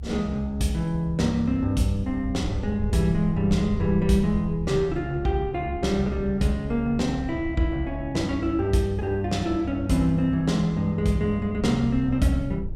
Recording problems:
low-frequency rumble; below 82 Hz, SNR 11 dB

